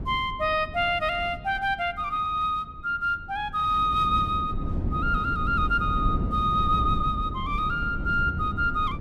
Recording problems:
wind noise; below 190 Hz, SNR 7 dB

